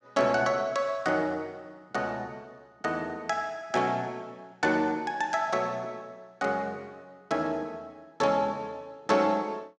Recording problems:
none

